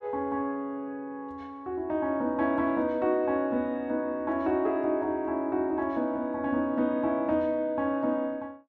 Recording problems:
none

